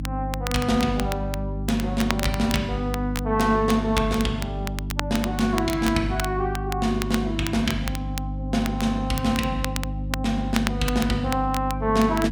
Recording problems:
hum; 50 Hz, harmonics up to 300 Hz, SNR 5 dB
crackle; vinyl, SNR 10 dB

